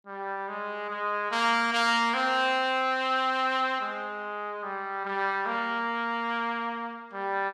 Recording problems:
none

